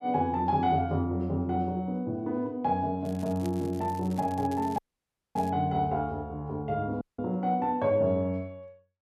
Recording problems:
crackling; from 3 to 5.5 s; loose cable, SNR 23 dB
audio cutting out; at 5 s for 0.5 s and at 7 s

